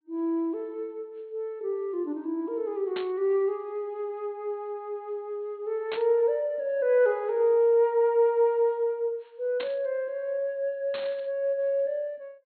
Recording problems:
low-pass filter; nothing above 4.3 kHz
static burst; 4 times, first at 3 s; peak -6 dB vs average level

